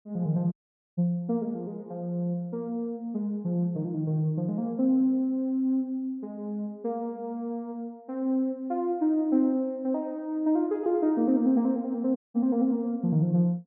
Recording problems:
dropout; at 0.5 s and at 12 s

